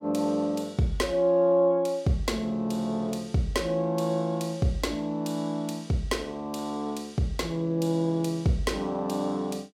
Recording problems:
none

